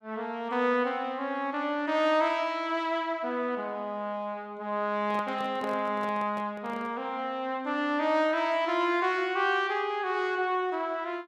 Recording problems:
microphone handling noise; from 5 to 7 s; peak -8 dB vs average level

